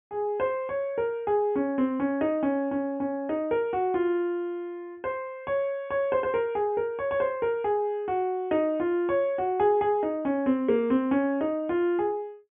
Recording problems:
low-pass filter; nothing above 3.4 kHz

